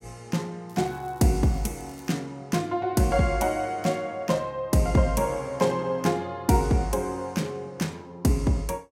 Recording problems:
crackle; from 0.5 to 2 s; loose cable, SNR 28 dB

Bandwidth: 16 kHz